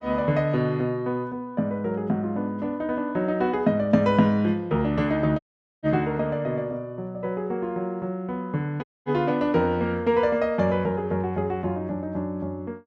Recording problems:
audio cutting out; at 5.5 s and at 9 s

